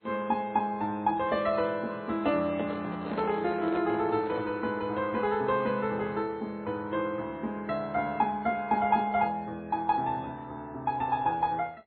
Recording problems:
lossy codec; MP2, then MP3, log-spectral distance 2 dB, nothing above 3.6 kHz
microphone handling noise; from 2.5 to 4.5 s; peak -3 dB vs average level

